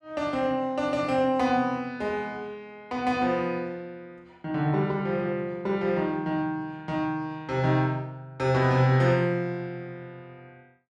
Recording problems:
none

